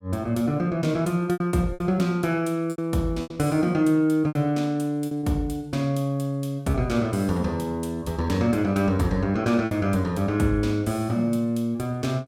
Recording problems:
lost packets; 5% of the sound replaced, filled with repeated pitch periods

